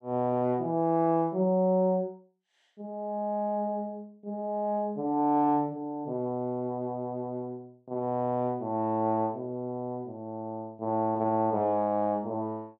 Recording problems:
none

